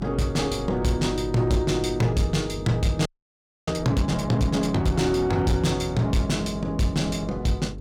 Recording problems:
distorted audio; hard clipping, signal-to-distortion ratio 12 dB
hum; 50 Hz, harmonics up to 450 Hz, SNR 13 dB
wind noise; below 260 Hz, SNR 19 dB
audio freezing; at 3 s for 0.5 s

